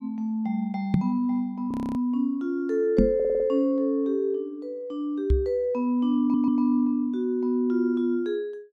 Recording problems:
knock on the microphone; at 1 s, at 3 s and at 5.5 s; peak +8 dB vs average level
frozen audio; at 1.5 s
stutter; at 3 s and at 6 s

